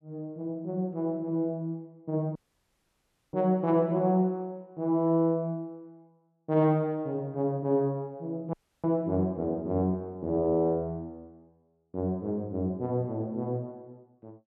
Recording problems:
dropout; at 2.5 s for 1 s and at 8.5 s

